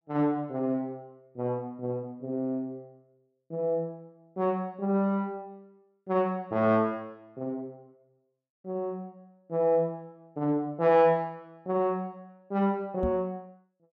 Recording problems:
microphone thump; at 13 s; peak 0 dB vs average level

